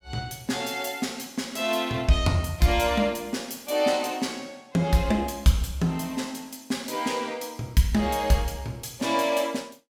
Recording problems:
none

